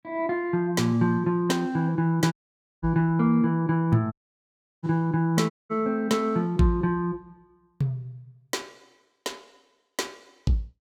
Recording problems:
dropout; at 2.5 s for 0.5 s, at 4 s for 0.5 s and at 5.5 s

